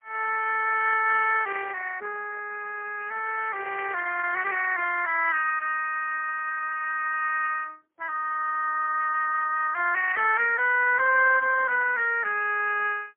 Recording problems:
phone line; 370 Hz to 3 kHz, AMR-NB, then MP3

